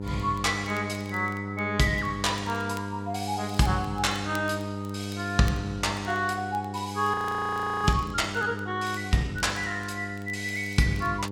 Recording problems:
hum; 50 Hz, harmonics up to 1 kHz, SNR 8 dB
crackle; vinyl, SNR 24 dB
frozen audio; at 7 s for 0.5 s

